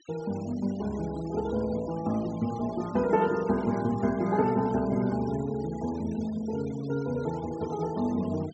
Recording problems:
treble cut off; nothing above 8 kHz
noise reduction artefacts; signal-to-artefact ratio 20 dB

